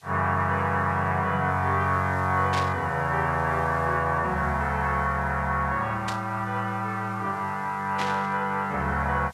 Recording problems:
hiss; slope +2 dB per octave, SNR 29 dB
static burst; at 2.5 s, at 6 s and at 8 s; peak -3 dB vs average level

